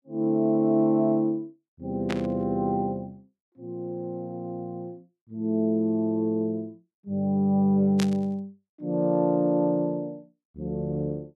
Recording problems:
burst of static; at 2 s and at 8 s; peak -3 dB vs average level

